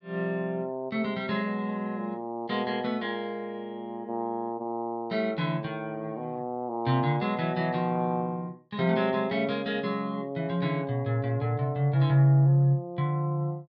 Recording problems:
none

